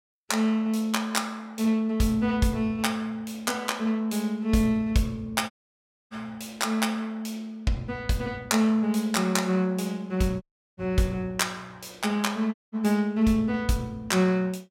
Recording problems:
dropout; at 5.5 s for 0.5 s, at 10 s and at 13 s

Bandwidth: 16.5 kHz